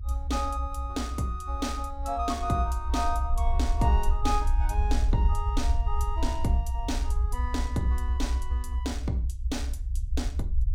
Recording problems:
rumble; below 64 Hz, SNR -1 dB

